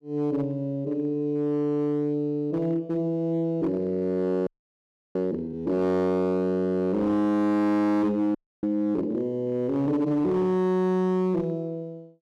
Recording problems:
distorted audio; hard clipping, signal-to-distortion ratio 11 dB
audio freezing; at 4.5 s for 0.5 s and at 8.5 s

